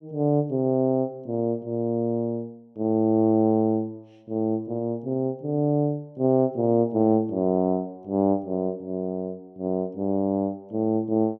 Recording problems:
none

